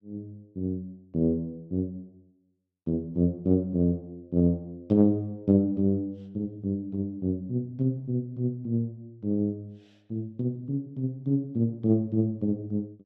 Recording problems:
none

